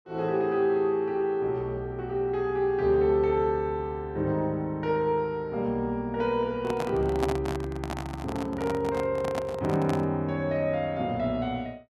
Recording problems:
microphone handling noise; from 6.5 to 10 s; peak +2 dB vs average level

